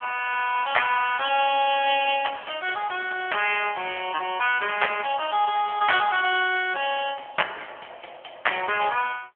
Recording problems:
phone line; 320 Hz to 3.3 kHz, AMR-NB

